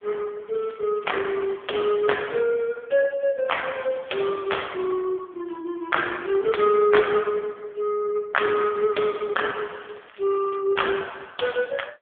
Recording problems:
phone line; 220 Hz to 3.4 kHz, AMR-NB
crackling; from 0.5 to 1.5 s, from 3.5 to 5 s and from 8.5 to 11 s; loose cable, SNR 27 dB

